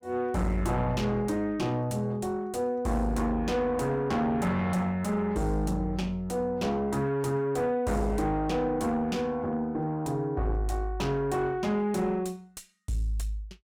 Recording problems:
distorted audio; soft clipping, signal-to-distortion ratio 9 dB

